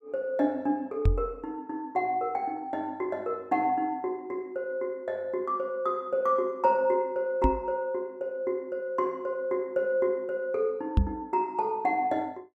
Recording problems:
microphone thump; at 1 s, at 7.5 s and at 11 s; peak +9 dB vs average level

